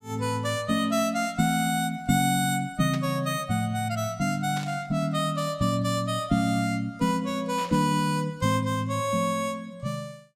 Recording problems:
burst of static; at 3 s, at 4.5 s and at 7.5 s; peak -9 dB vs average level

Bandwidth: 16 kHz